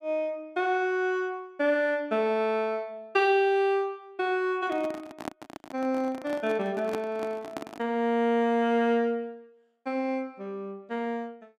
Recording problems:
microphone handling noise; from 4.5 to 8 s; peak -3 dB vs average level

